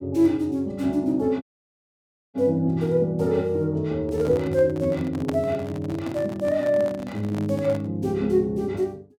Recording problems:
audio cutting out; at 1.5 s for 1 s
microphone handling noise; from 4 to 8 s; peak -2 dB vs average level

